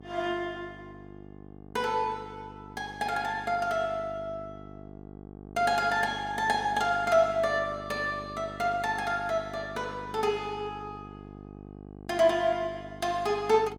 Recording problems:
hum; 50 Hz, harmonics up to 1.2 kHz, SNR 17 dB

